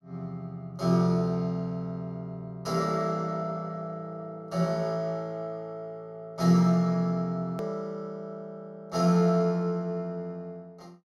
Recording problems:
click at an edit; at 7.5 s

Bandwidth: 16 kHz